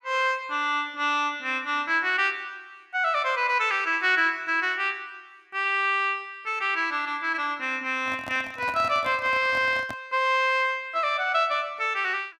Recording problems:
microphone handling noise; from 8 to 10 s; peak -9 dB vs average level

